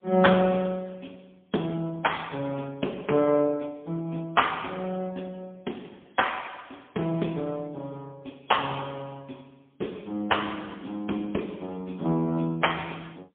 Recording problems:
phone line; 190 Hz to 3.4 kHz, AMR-NB, then MP3

